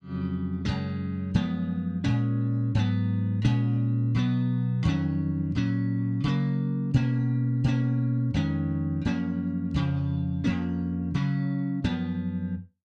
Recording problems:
none

